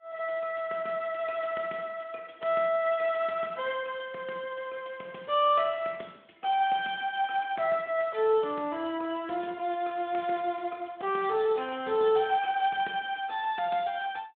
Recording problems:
phone line; 240 Hz to 3.5 kHz, Speex

